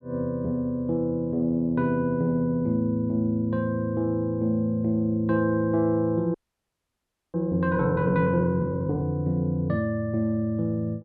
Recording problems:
audio freezing; at 6.5 s for 1 s

